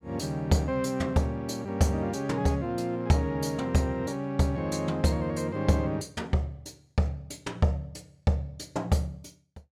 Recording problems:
none

